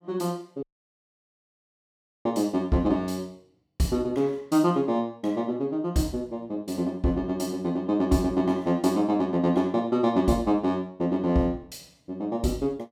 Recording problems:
audio cutting out; at 0.5 s for 1.5 s

